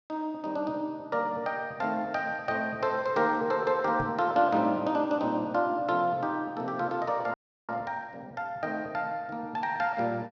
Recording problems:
microphone bump; at 4 s; peak -4 dB vs average level
audio freezing; at 7.5 s

